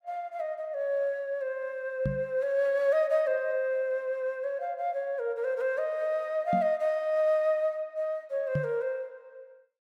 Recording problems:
microphone bump; at 2 s, at 6.5 s and at 8.5 s; peak +2 dB vs average level

